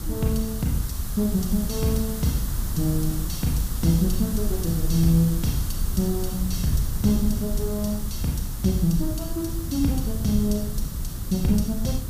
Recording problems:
background hiss; SNR 11 dB
low-frequency rumble; below 100 Hz, SNR 6 dB

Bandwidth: 15 kHz